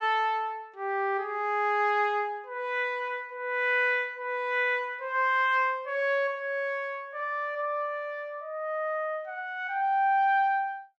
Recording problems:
none

